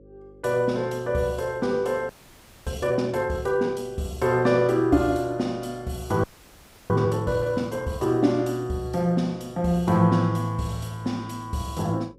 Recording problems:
hum; 50 Hz, harmonics up to 550 Hz, SNR 26 dB
audio freezing; at 2 s for 0.5 s and at 6 s for 0.5 s

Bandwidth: 15.5 kHz